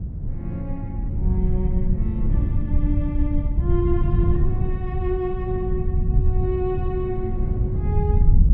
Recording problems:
low-frequency rumble; below 92 Hz, SNR -4 dB
wind on the microphone; below 140 Hz, SNR 2 dB

